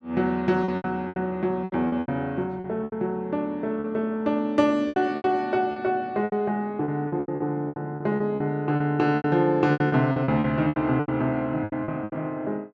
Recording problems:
lost packets; 16% of the sound replaced, filled with repeated pitch periods

